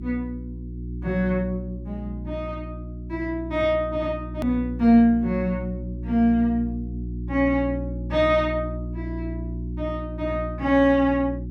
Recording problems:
electrical hum; 60 Hz, harmonics up to 360 Hz, SNR 9 dB
click at an edit; at 4.5 s

